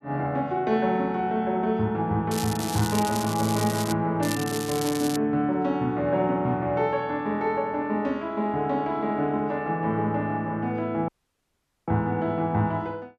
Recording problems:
crackling; from 2.5 to 4 s and at 4 s; loose cable, SNR 9 dB
dropout; at 11 s for 1 s

